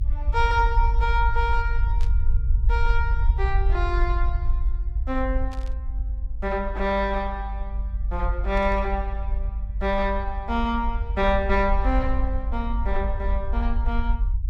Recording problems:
rumble; below 54 Hz, SNR 0 dB
static burst; at 2 s, at 5.5 s and at 8.5 s; peak -13 dB vs average level

